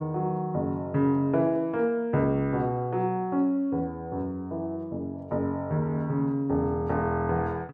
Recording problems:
none

